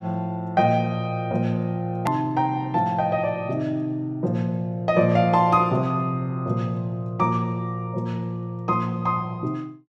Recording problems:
click at an edit; at 2 s

